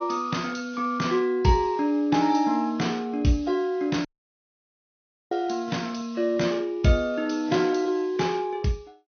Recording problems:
treble cut off; nothing above 6.3 kHz
codec artefacts; AAC, log-spectral distance 2 dB
audio cutting out; at 4 s for 1.5 s

